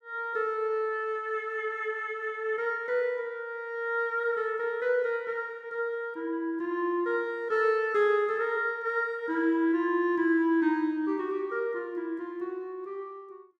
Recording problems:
none

